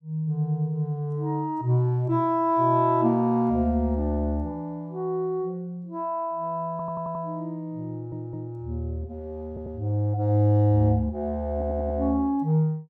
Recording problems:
audio stuttering; 4 times, first at 6.5 s

